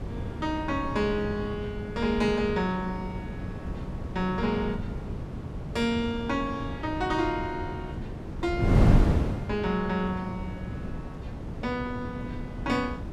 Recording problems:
wind noise; below 240 Hz, SNR 2 dB

